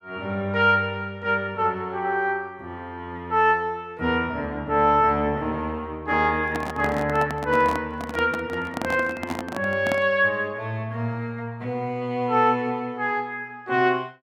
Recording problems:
microphone handling noise; from 6.5 to 10 s; peak -1 dB vs average level

